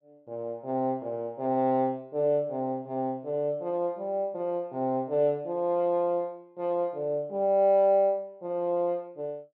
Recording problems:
none

